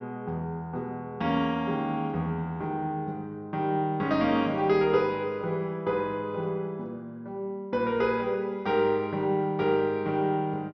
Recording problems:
treble cut off; nothing above 6.1 kHz

